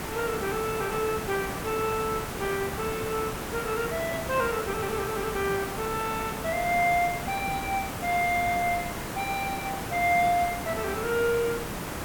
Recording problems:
hiss; slope -5 dB per octave, SNR 5 dB

